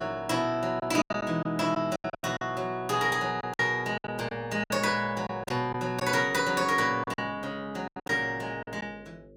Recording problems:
hum; 50 Hz, harmonics up to 550 Hz, SNR 25 dB
packet loss; 10% of the sound replaced, filled with silence

